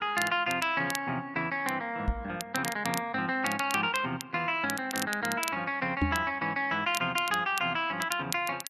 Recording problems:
crackle; vinyl, SNR 10 dB
knock on the microphone; at 2 s and at 6 s; peak +5 dB vs average level

